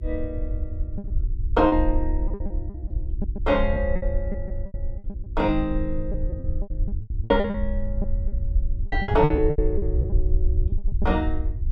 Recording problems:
hum; 60 Hz, harmonics up to 420 Hz, SNR 23 dB
rumble; below 68 Hz, SNR 2 dB
packet loss; 14% of the sound replaced, filled with repeated pitch periods

